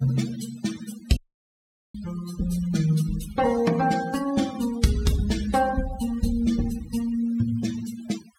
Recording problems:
denoising artefacts; signal-to-artefact ratio 14 dB
dropout; at 1 s for 1 s

